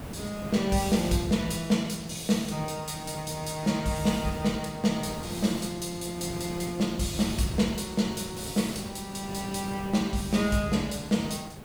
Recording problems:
background hiss; slope -6 dB per octave, SNR 12 dB

